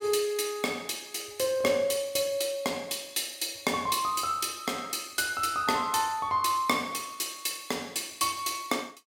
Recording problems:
none

